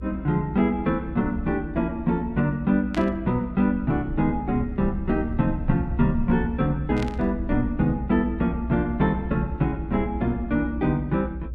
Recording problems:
hum; 50 Hz, harmonics up to 600 Hz, SNR 25 dB
low-frequency rumble; below 70 Hz, SNR 10 dB
burst of static; at 3 s and at 7 s; peak -7 dB vs average level

